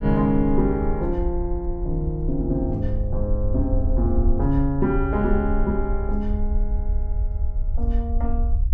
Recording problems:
low-frequency rumble; below 62 Hz, SNR 2 dB

